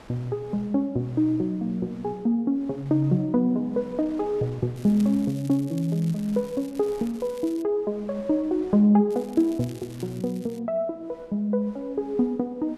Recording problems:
wind on the microphone; below 1.3 kHz, SNR 26 dB
crackling; from 4.5 to 7.5 s and from 9 to 11 s; loose cable, SNR 24 dB

